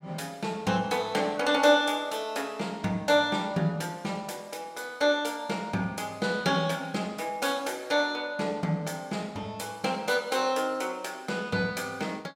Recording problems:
none

